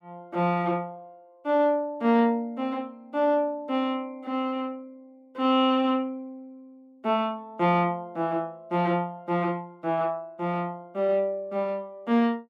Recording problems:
none

